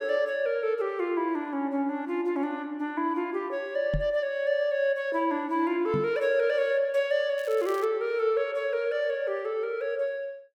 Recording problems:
knock on the microphone; at 4 s and at 6 s; peak +2 dB vs average level
crackle; at 7.5 s; loose cable, SNR 22 dB

